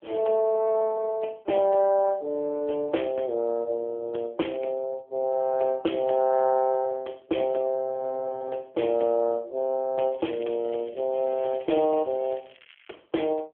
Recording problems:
telephone audio; 280 Hz to 3.4 kHz, AMR-NB
crackle; from 10 to 13 s; loose cable, SNR 27 dB

